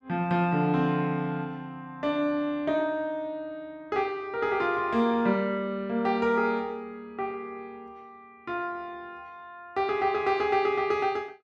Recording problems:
none

